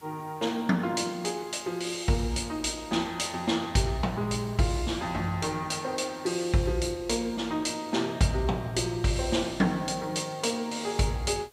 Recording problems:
background hiss; slope -2 dB per octave, SNR 28 dB

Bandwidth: 15.5 kHz